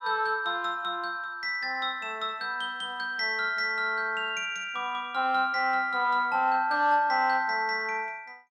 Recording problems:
none

